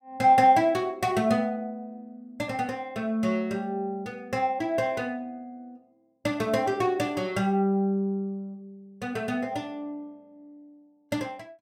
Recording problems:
none

